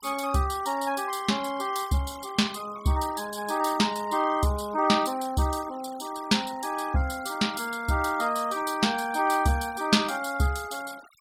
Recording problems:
denoising artefacts; signal-to-artefact ratio 19 dB

